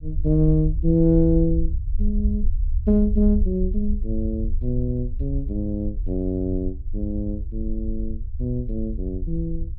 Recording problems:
rumble; below 62 Hz, SNR 4 dB

